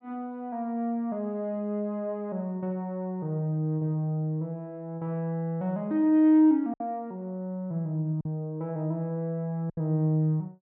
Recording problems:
packet loss; 1.6% of the sound replaced, filled with silence

